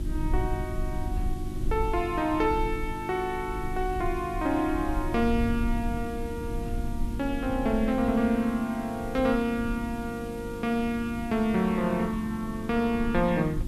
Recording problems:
electrical hum; 50 Hz, harmonics up to 350 Hz, SNR 11 dB
background hiss; slope -1 dB per octave, SNR 23 dB
rumble; below 68 Hz, SNR 9 dB

